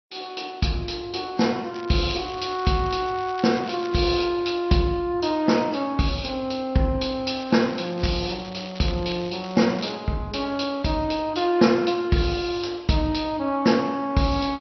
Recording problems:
codec artefacts; MP2, then Vorbis, log-spectral distance 6 dB, nothing above 5.7 kHz
crackle; from 1.5 to 4 s and from 7.5 to 10 s; loose cable, SNR 19 dB

